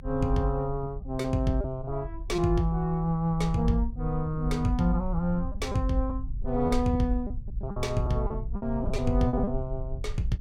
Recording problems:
low-frequency rumble; below 62 Hz, SNR 8 dB
packet loss; 6% of the sound replaced, filled with repeated pitch periods

